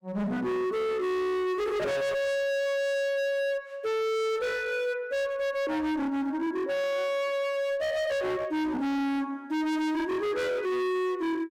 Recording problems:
distortion; hard clipping, signal-to-distortion ratio 7 dB

